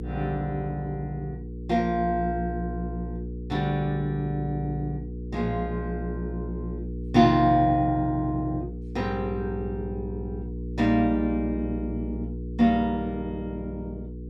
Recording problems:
mains hum; 60 Hz, harmonics up to 480 Hz, SNR 8 dB

